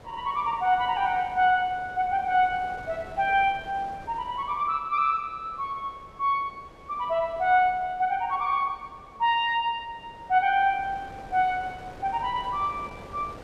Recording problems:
wind noise; below 870 Hz, SNR 20 dB

